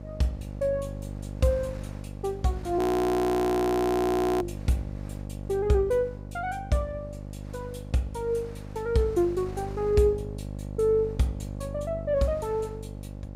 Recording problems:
mains hum; 50 Hz, harmonics up to 850 Hz, SNR 11 dB
wind noise; below 1.5 kHz, SNR 24 dB
frozen audio; at 3 s for 1.5 s

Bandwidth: 15.5 kHz